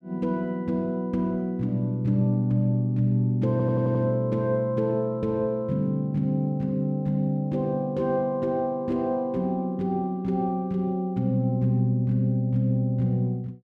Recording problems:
audio stuttering; at 3.5 s

